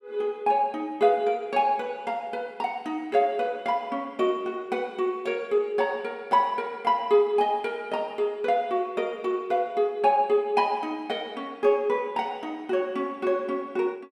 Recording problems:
none

